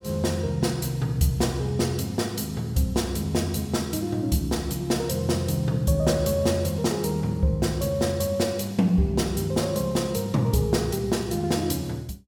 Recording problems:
none

